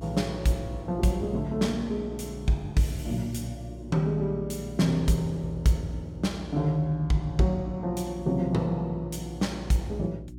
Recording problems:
hum; 60 Hz, harmonics up to 360 Hz, SNR 13 dB

